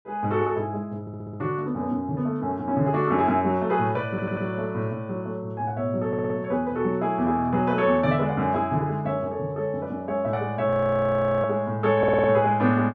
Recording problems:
stutter; 4 times, first at 1 s
frozen audio; at 11 s for 0.5 s

